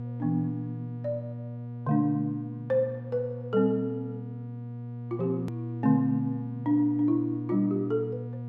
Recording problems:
hum; 60 Hz, harmonics up to 720 Hz, SNR 8 dB
edit click; at 5.5 s

